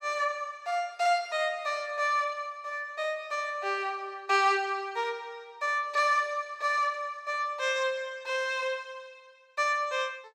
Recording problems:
none

